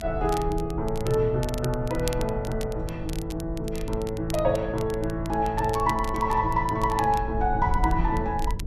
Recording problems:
rumble; below 70 Hz, SNR 8 dB
crackling; vinyl, SNR 17 dB

